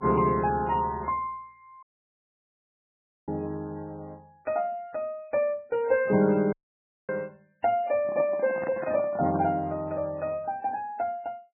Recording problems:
lossy compression; MP3, log-spectral distance 2 dB, nothing above 2.4 kHz
audio cutting out; at 2 s for 1.5 s and at 6.5 s for 0.5 s
handling noise; from 8 to 9.5 s; peak -2 dB vs average level

